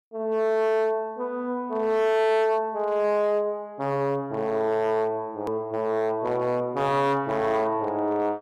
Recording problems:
distortion; hard clipping, signal-to-distortion ratio 12 dB
click at an edit; at 5.5 s

